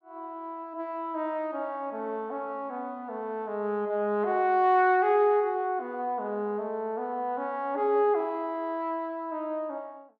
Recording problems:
none

